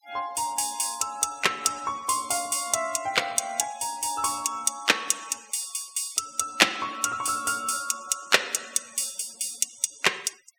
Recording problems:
noise reduction artefacts; signal-to-artefact ratio 21 dB

